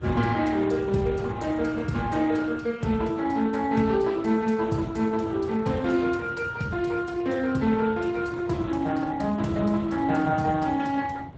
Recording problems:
lossy codec; Speex, then Opus, log-spectral distance 3 dB, nothing above 8 kHz
low-frequency rumble; below 190 Hz, SNR 15 dB

